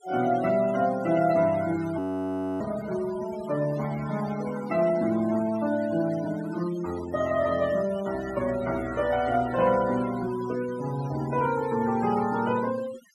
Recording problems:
noise reduction artefacts; signal-to-artefact ratio 15 dB
frozen audio; at 2 s for 0.5 s

